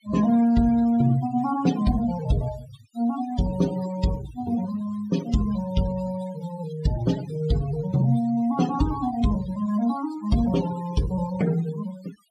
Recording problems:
noise reduction artefacts; signal-to-artefact ratio 15 dB

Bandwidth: 15 kHz